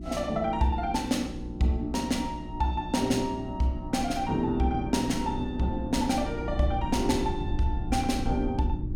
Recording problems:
electrical hum; 60 Hz, harmonics up to 360 Hz, SNR 10 dB
rumble; below 86 Hz, SNR 11 dB

